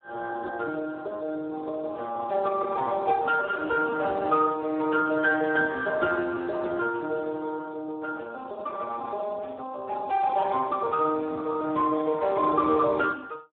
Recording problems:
phone line; 280 Hz to 2.1 kHz, Speex

